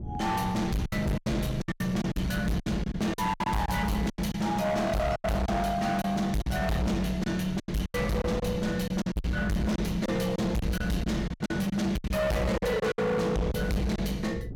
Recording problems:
distorted audio; hard clipping, uneven, signal-to-distortion ratio 6 dB
wind noise; below 220 Hz, SNR 13 dB
lost packets; 12% of the sound replaced, filled with silence

